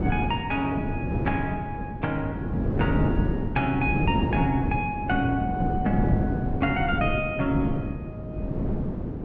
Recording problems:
wind on the microphone; below 290 Hz, SNR 1 dB

